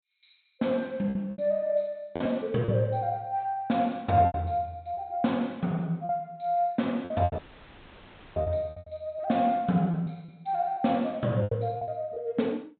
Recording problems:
treble missing; nothing above 4 kHz
lost packets; 8% of the sound replaced, filled with repeated pitch periods
audio cutting out; at 7.5 s for 1 s; filled with static

